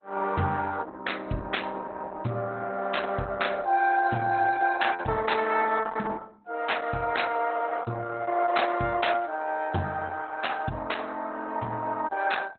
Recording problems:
codec artefacts; Opus, log-spectral distance 5 dB, nothing above 4 kHz

